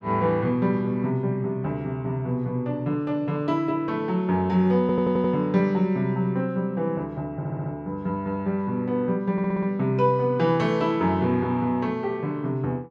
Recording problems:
stutter; at 5 s, at 7.5 s and at 9.5 s

